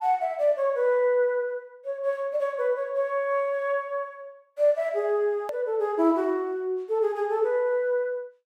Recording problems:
click at an edit; at 5.5 s

